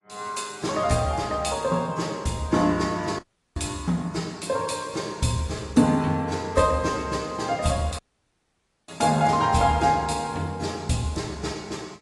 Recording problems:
lossy codec; AAC, log-spectral distance 5 dB, nothing above 10.4 kHz
audio cutting out; at 3 s and at 8 s for 1 s

